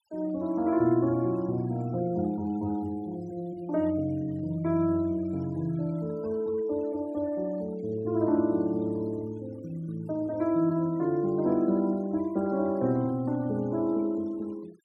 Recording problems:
noise reduction artefacts; signal-to-artefact ratio 27 dB

